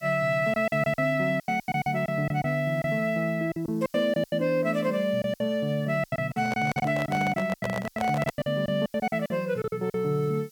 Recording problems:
hiss; SNR 28 dB
lost packets; 15% of the sound replaced, filled with silence
handling noise; from 6.5 to 8.5 s; peak -1 dB vs average level

